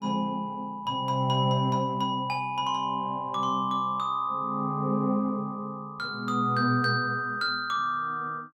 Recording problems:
none

